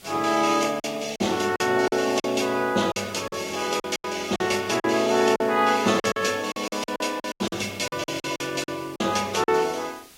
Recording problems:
lossy compression; AAC, log-spectral distance 4 dB, nothing above 13.5 kHz
hiss; slope -1 dB per octave, SNR 23 dB
packet loss; 12% of the sound replaced, filled with silence

